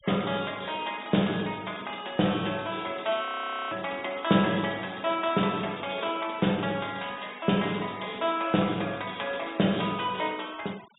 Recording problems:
low-pass filter; nothing above 4 kHz
noise reduction artefacts; signal-to-artefact ratio 20 dB
audio freezing; at 3.5 s

